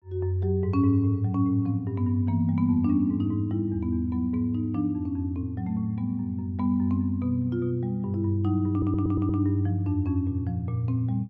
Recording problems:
audio stuttering; at 8.5 s

